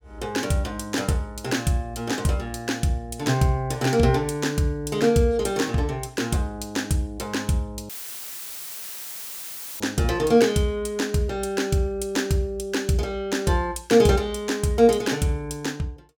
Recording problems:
dropout; at 8 s for 2 s; filled with static

